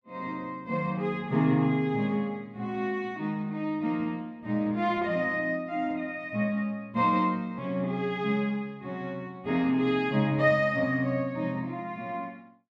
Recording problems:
none

